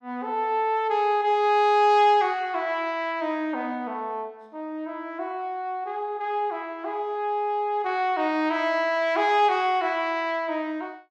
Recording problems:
none

